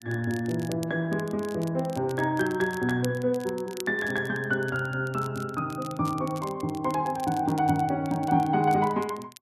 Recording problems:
crackle; vinyl, SNR 20 dB

